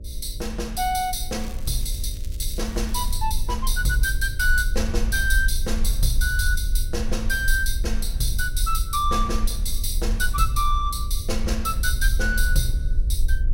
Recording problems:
hum; 60 Hz, harmonics up to 600 Hz, SNR 22 dB
low-frequency rumble; below 52 Hz, SNR 2 dB
crackle; from 1.5 to 3 s; loose cable, SNR 19 dB

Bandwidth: 16 kHz